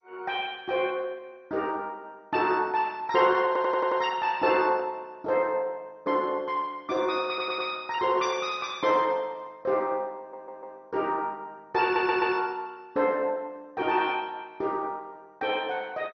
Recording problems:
lossy codec; MP2, log-spectral distance 3 dB, nothing above 5.3 kHz
audio stuttering; 4 times, first at 3.5 s

